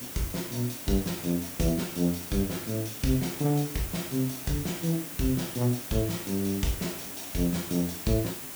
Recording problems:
hiss; slope -2 dB per octave, SNR 8 dB

